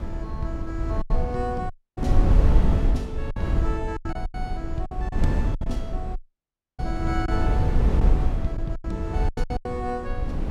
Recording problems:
wind on the microphone; below 92 Hz, SNR -7 dB
packet loss; 8% of the sound replaced, filled with silence
dropout; at 1.5 s and at 6 s for 0.5 s

